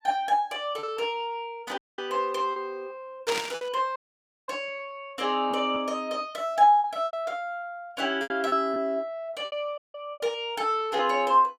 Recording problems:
lost packets; 8% of the sound replaced, filled with repeated pitch periods
audio cutting out; at 2 s, at 4 s for 0.5 s and at 10 s
static burst; at 3.5 s; peak +1 dB vs average level

